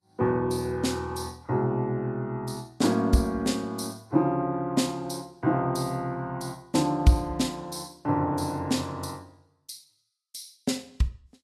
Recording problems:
codec artefacts; Vorbis, log-spectral distance 3 dB, nothing above 13.1 kHz

